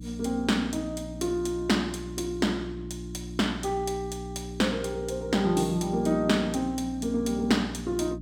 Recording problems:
electrical hum; 60 Hz, harmonics up to 300 Hz, SNR 11 dB

